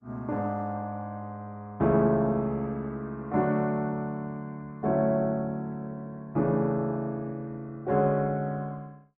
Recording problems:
codec artefacts; Opus, log-spectral distance 2 dB

